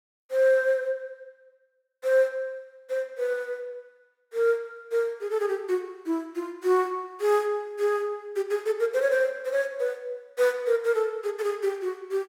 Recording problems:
none

